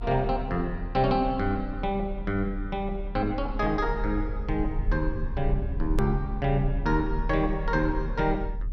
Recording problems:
low-frequency rumble; below 44 Hz, strongest tone 38 Hz, SNR 6 dB
hard cut with a click; at 6 s

